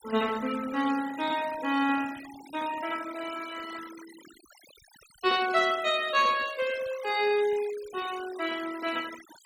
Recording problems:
noise reduction artefacts; signal-to-artefact ratio 16 dB

